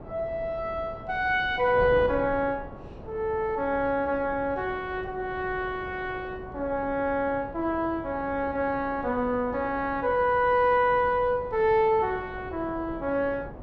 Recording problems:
wind noise; below 560 Hz, SNR 15 dB

